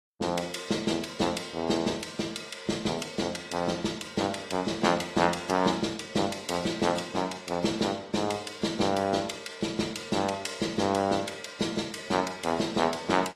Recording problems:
lossy codec; AAC, log-spectral distance 4 dB

